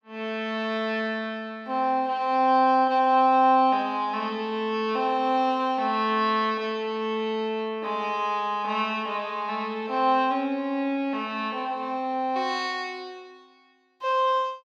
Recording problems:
none

